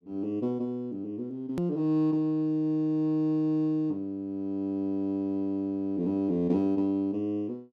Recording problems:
click at an edit; at 1.5 s

